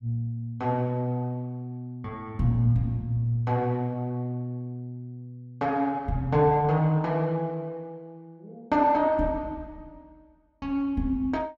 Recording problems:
none

